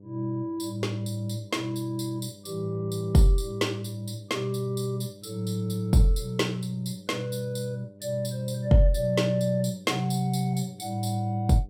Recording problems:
electrical hum; 50 Hz, harmonics up to 600 Hz, SNR 23 dB

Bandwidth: 16 kHz